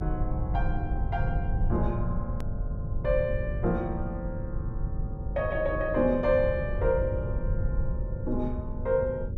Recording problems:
hum; 50 Hz, harmonics up to 550 Hz, SNR 14 dB
rumble; below 100 Hz, SNR 3 dB
edit click; at 2.5 s

